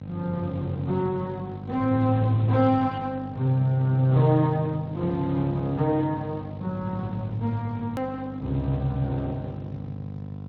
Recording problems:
codec artefacts; Speex, log-spectral distance 2 dB, nothing above 17.1 kHz
electrical hum; 50 Hz, harmonics up to 800 Hz, SNR 11 dB
edit click; at 8 s

